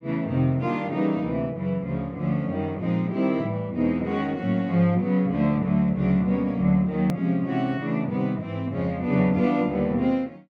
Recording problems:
hard cut with a click; at 7 s

